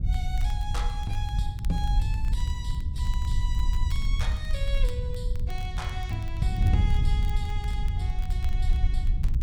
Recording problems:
low-frequency rumble; below 58 Hz, SNR -3 dB
wind noise; below 86 Hz, SNR -7 dB
crackling; vinyl, SNR 17 dB

